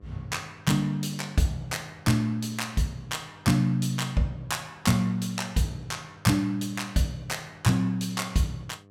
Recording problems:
hum; 50 Hz, harmonics up to 1.3 kHz, SNR 27 dB

